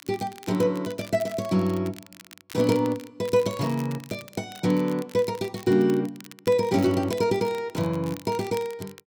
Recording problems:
crackle; vinyl, SNR 20 dB

